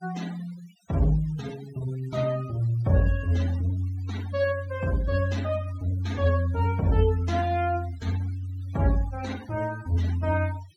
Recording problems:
noise reduction artefacts; signal-to-artefact ratio 19 dB

